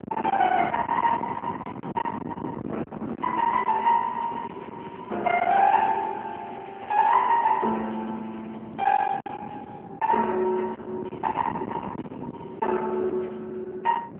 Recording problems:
telephone audio; 220 Hz to 3.2 kHz, AMR-NB
distorted audio; hard clipping, uneven, signal-to-distortion ratio 9 dB
wind noise; below 980 Hz, SNR 9 dB
crackle; from 3 to 6 s and from 6.5 to 8.5 s; loose cable, SNR 27 dB

